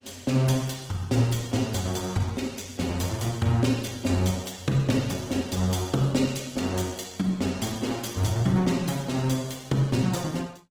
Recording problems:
lossy codec; Opus, log-spectral distance 5 dB, nothing above 19 kHz

